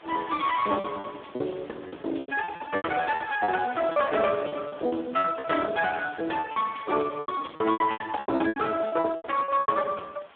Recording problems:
telephone audio; 280 Hz to 2.2 kHz, Speex
distortion; hard clipping, uneven, signal-to-distortion ratio 12 dB
hiss; SNR 24 dB
packet loss; 15% of the sound replaced, filled with repeated pitch periods

